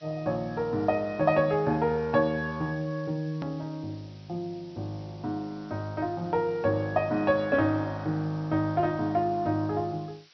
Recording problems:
low-pass filter; nothing above 5.2 kHz
lossy compression; G.722, log-spectral distance 7 dB
background hiss; SNR 27 dB
edit click; at 3.5 s

